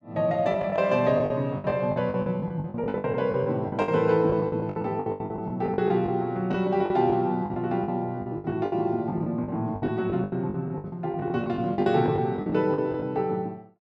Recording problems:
packet loss; 18% of the sound replaced, filled with the last packet

